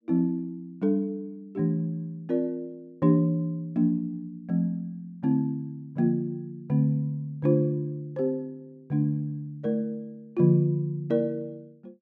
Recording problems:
none

